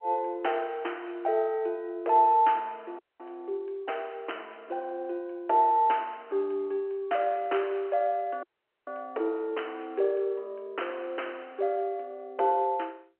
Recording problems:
telephone audio; 300 Hz to 3.1 kHz, G.711
audio cutting out; at 3 s and at 8.5 s

